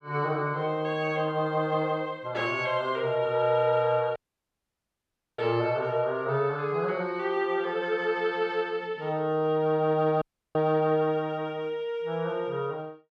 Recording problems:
audio cutting out; at 4 s for 1 s and at 10 s

